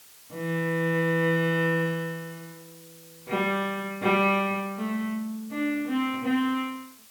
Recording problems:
hiss; slope +1 dB per octave, SNR 22 dB

